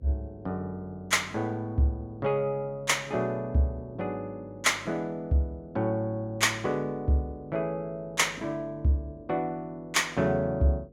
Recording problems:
hum; 50 Hz, harmonics up to 550 Hz, SNR 24 dB

